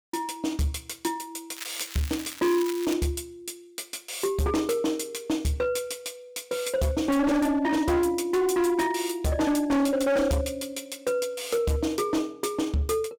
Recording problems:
distorted audio; hard clipping, signal-to-distortion ratio 7 dB
crackling; from 1.5 to 3 s; loose cable, SNR 11 dB

